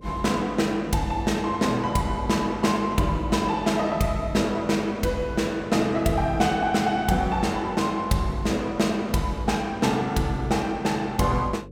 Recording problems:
hum; 50 Hz, harmonics up to 550 Hz, SNR 20 dB

